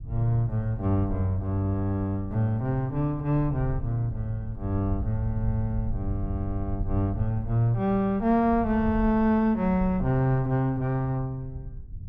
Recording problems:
low-frequency rumble; below 84 Hz, SNR 11 dB

